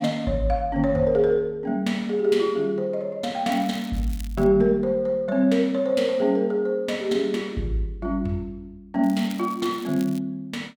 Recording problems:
crackling; at 3.5 s and from 9 to 10 s; loose cable, SNR 22 dB

